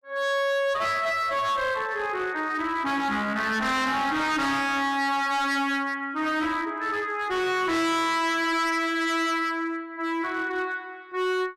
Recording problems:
distorted audio; hard clipping, signal-to-distortion ratio 7 dB

